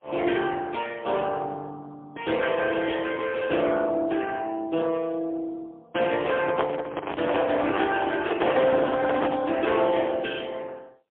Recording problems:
telephone audio; 240 Hz to 3.4 kHz, AMR-NB, then MP3
handling noise; from 6 to 9.5 s; peak +4 dB vs average level

